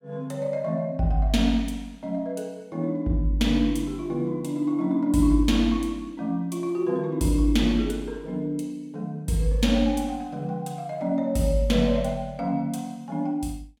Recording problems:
none

